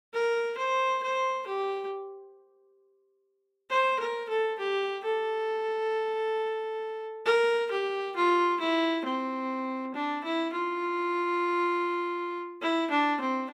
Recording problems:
none

